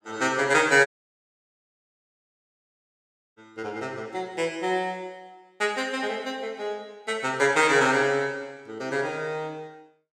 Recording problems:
dropout; at 1 s for 2.5 s

